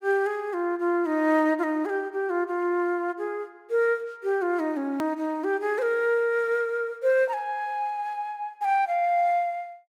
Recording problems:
edit click; at 5 s

